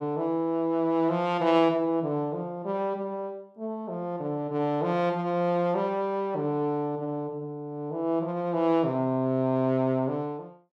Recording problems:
none

